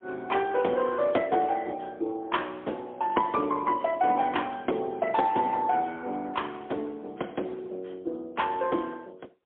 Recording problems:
phone line; 280 Hz to 3.5 kHz, AMR-NB, then MP3

